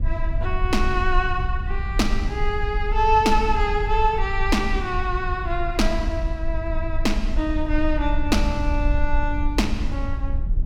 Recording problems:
low-frequency rumble; below 56 Hz, SNR 3 dB

